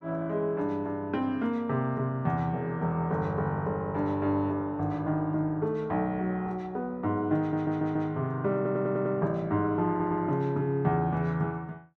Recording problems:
audio stuttering; at 7.5 s, at 8.5 s and at 10 s

